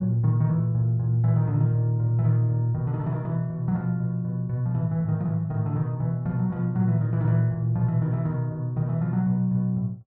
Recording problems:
none

